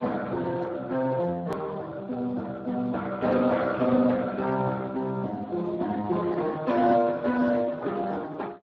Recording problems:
lossy compression; Speex, then Speex, log-spectral distance 3 dB
click at an edit; at 1.5 s

